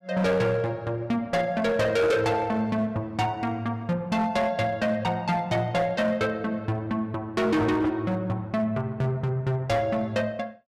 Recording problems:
distortion; hard clipping, signal-to-distortion ratio 10 dB

